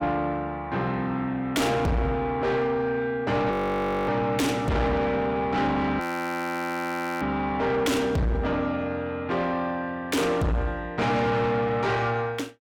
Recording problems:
distortion; soft clipping, signal-to-distortion ratio 7 dB
audio freezing; at 3.5 s for 0.5 s and at 6 s for 1 s

